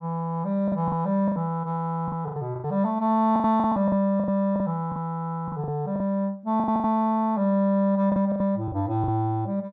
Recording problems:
lost packets; 12% of the sound replaced, filled with the last packet

